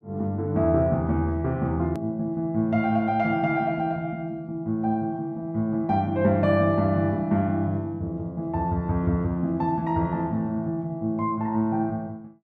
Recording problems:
click at an edit; at 2 s

